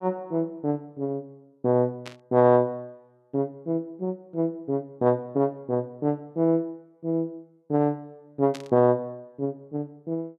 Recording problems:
burst of static; at 2 s and at 8.5 s; peak -9 dB vs average level

